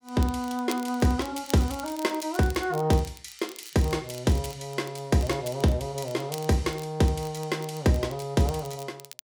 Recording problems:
crackling; vinyl, SNR 18 dB

